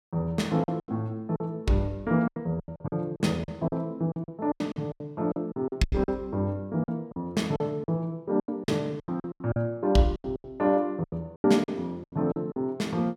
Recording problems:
lost packets; 16% of the sound replaced, filled with silence

